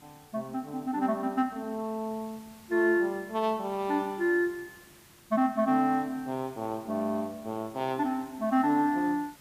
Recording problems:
background hiss; slope -2 dB per octave, SNR 24 dB

